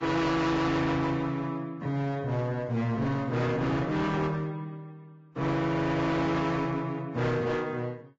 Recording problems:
lossy codec; Vorbis, log-spectral distance 2 dB
distortion; hard clipping, uneven, signal-to-distortion ratio 7 dB

